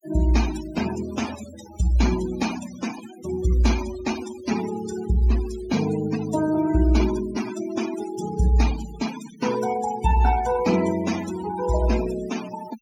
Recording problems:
noise reduction artefacts; signal-to-artefact ratio 11 dB

